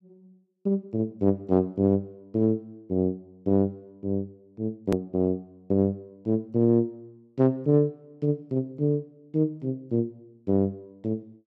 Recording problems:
click at an edit; at 5 s

